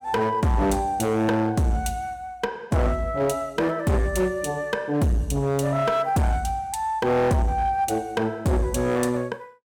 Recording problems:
distorted audio; hard clipping, signal-to-distortion ratio 7 dB

